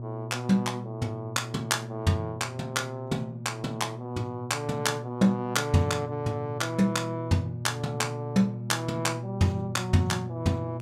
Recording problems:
hum; 60 Hz, harmonics up to 600 Hz, SNR 9 dB

